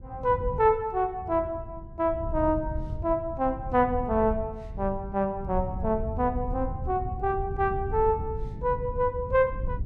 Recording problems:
wind on the microphone; below 110 Hz, SNR 9 dB

